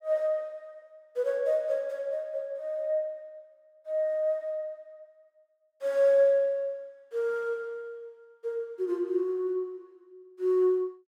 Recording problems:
none

